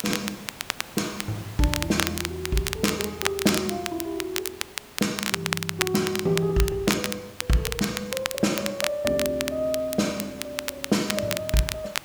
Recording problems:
hiss; slope -3 dB per octave, SNR 17 dB
crackling; vinyl, SNR 3 dB

